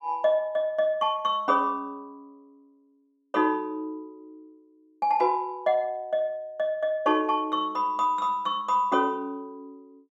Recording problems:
none

